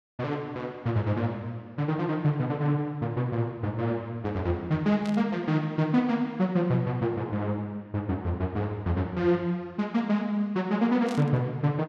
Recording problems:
static burst; at 5 s and at 11 s; peak -10 dB vs average level

